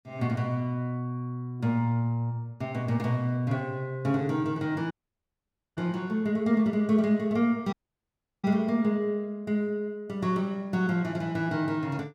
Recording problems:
audio cutting out; at 5 s for 1 s and at 7.5 s for 0.5 s

